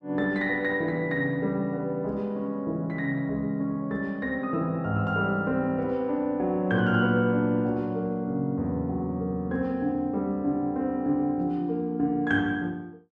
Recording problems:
none

